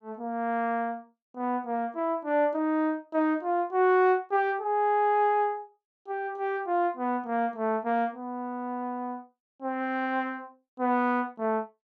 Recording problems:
none

